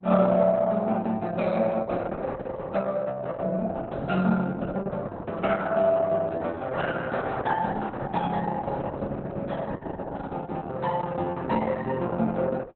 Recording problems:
lossy compression; Opus, log-spectral distance 4 dB, nothing above 4 kHz

